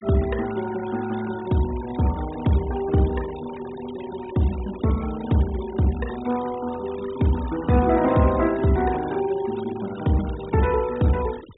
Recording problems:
treble missing; nothing above 4 kHz
noise reduction artefacts; signal-to-artefact ratio 18 dB

